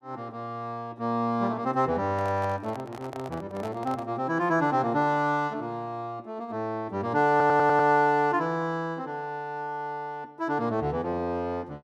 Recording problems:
microphone handling noise; from 2 to 4 s; peak -9 dB vs average level
audio stuttering; at 7.5 s

